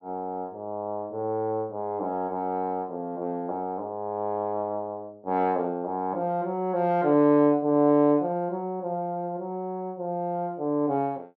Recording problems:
none

